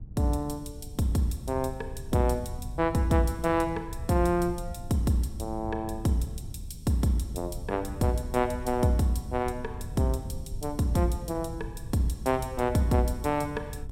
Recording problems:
wind noise; below 110 Hz, SNR 12 dB

